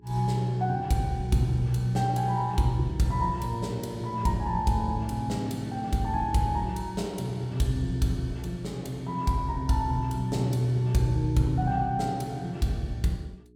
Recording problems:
electrical hum; 60 Hz, harmonics up to 420 Hz, SNR 28 dB

